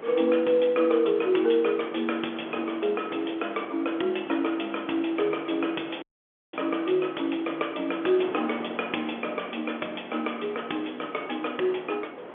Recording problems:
phone line; 280 Hz to 3.4 kHz, G.711
wind noise; below 980 Hz, SNR 15 dB
dropout; at 6 s for 0.5 s

